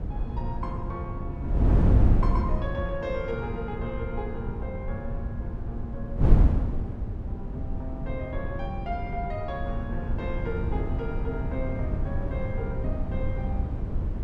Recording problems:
wind on the microphone; below 120 Hz, SNR -6 dB

